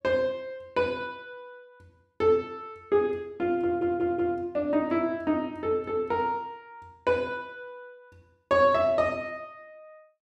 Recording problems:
stutter; at 3.5 s

